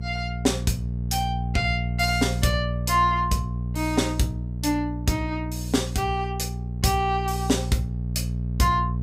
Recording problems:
hum; 60 Hz, harmonics up to 420 Hz, SNR 4 dB

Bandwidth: 15.5 kHz